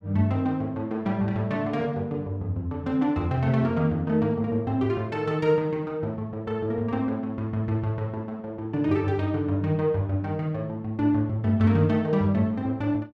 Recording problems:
none

